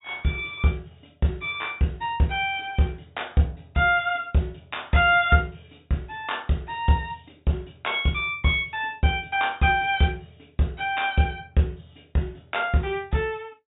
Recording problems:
treble cut off; nothing above 4 kHz

